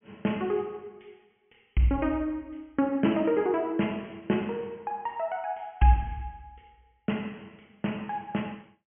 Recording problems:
treble cut off; nothing above 3.2 kHz

